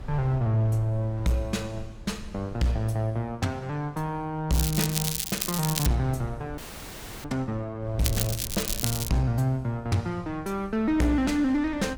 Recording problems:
distorted audio; hard clipping, uneven, signal-to-distortion ratio 11 dB
wind noise; below 100 Hz, SNR 16 dB
crackle; from 4.5 to 6 s and from 8 to 9 s; loose cable, SNR 2 dB
frozen audio; at 6.5 s for 0.5 s

